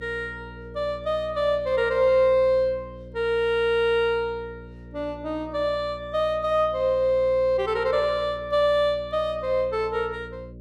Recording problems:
hum; 60 Hz, harmonics up to 600 Hz, SNR 19 dB

